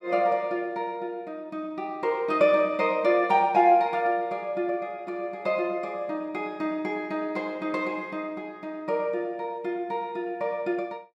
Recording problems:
none

